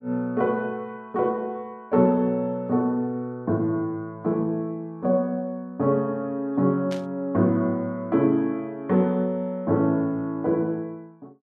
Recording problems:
static burst; at 7 s; peak -9 dB vs average level

